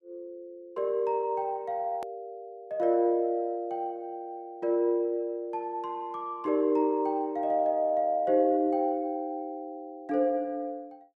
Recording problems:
click at an edit; at 2 s

